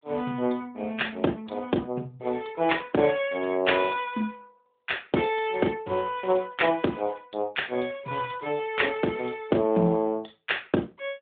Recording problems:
telephone audio; 170 Hz to 3.7 kHz, AMR-NB

